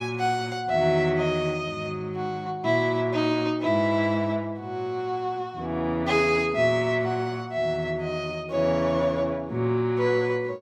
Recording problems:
none

